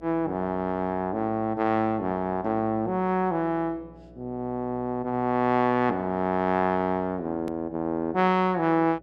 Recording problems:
electrical hum; 60 Hz, harmonics up to 720 Hz, SNR 25 dB
edit click; at 7.5 s

